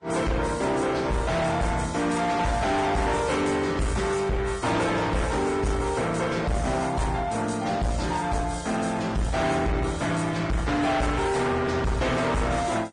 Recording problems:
codec artefacts; MP3, then Vorbis, log-spectral distance 4 dB, nothing above 9.5 kHz
distorted audio; hard clipping, uneven, signal-to-distortion ratio 7 dB

